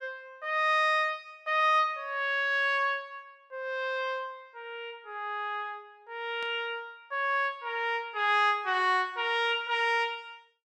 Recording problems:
static burst; at 6.5 s; peak -16 dB vs average level

